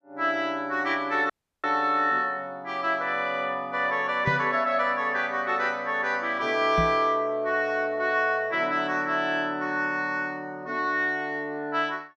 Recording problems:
dropout; at 1.5 s
microphone thump; at 4.5 s and at 7 s; peak +1 dB vs average level

